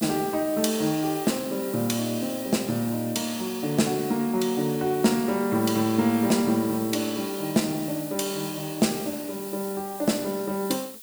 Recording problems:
hiss; slope +7 dB per octave, SNR 12 dB

